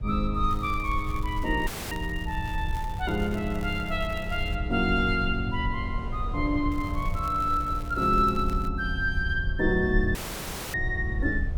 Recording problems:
rumble; below 78 Hz, SNR 6 dB
wind noise; below 610 Hz, SNR 20 dB
crackling; from 0.5 to 4.5 s and from 6.5 to 8.5 s; loose cable, SNR 21 dB
audio cutting out; at 1.5 s and at 10 s for 0.5 s

